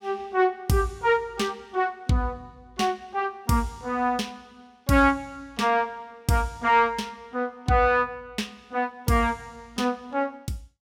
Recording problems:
none

